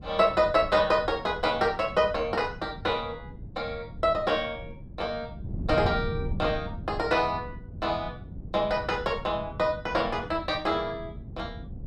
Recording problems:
wind noise; below 170 Hz, SNR 12 dB

